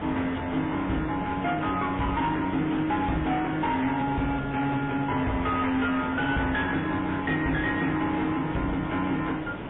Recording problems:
treble missing; nothing above 3.5 kHz
codec artefacts; MP3, log-spectral distance 5 dB
distorted audio; hard clipping, signal-to-distortion ratio 11 dB
background hiss; SNR 9 dB

